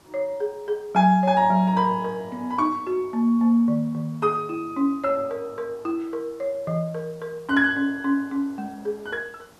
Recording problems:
hiss; SNR 29 dB

